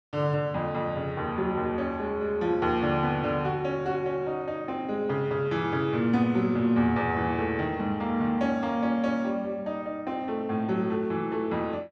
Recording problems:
none

